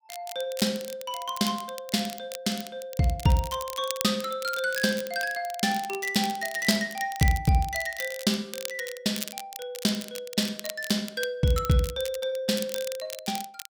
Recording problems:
crackling; vinyl, SNR 11 dB

